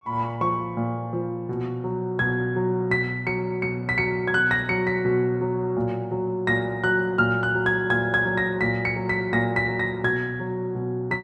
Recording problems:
none

